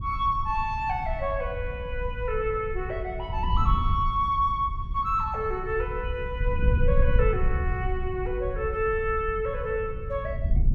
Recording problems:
wind noise; below 78 Hz, SNR 3 dB

